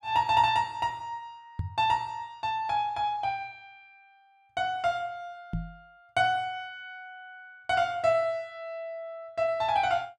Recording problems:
microphone bump; at 1.5 s and at 5.5 s; peak 0 dB vs average level

